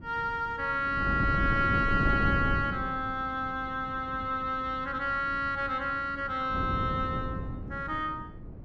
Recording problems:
wind noise; below 240 Hz, SNR 6 dB

